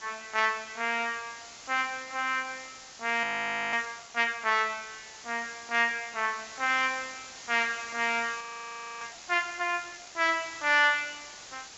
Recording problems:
treble missing; nothing above 7.4 kHz
background hiss; slope 0 dB per octave, SNR 16 dB
frozen audio; at 3 s for 0.5 s and at 8.5 s for 0.5 s

